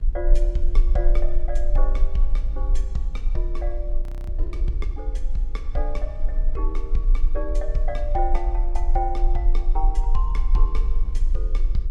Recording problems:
low-frequency rumble; below 36 Hz, strongest tone 24 Hz, SNR -6 dB
wind on the microphone; below 160 Hz, SNR 15 dB
audio freezing; at 4 s

